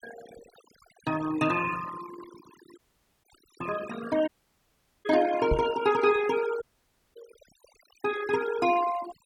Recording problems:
denoising artefacts; signal-to-artefact ratio 13 dB
audio cutting out; at 3 s, at 4.5 s for 1 s and at 6.5 s for 0.5 s
knock on the microphone; at 5.5 s; peak +3 dB vs average level

